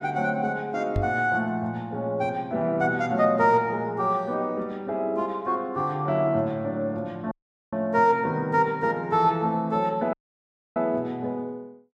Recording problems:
microphone bump; at 1 s; peak +1 dB vs average level
dropout; at 7.5 s and at 10 s for 0.5 s

